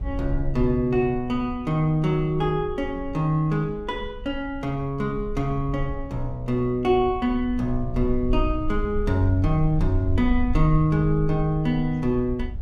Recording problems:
low-frequency rumble; below 58 Hz, SNR 9 dB

